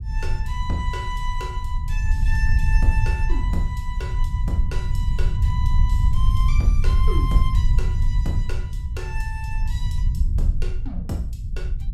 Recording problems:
rumble; below 72 Hz, SNR -8 dB

